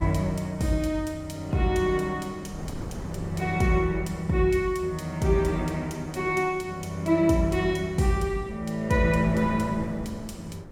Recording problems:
wind on the microphone; below 350 Hz, SNR 16 dB

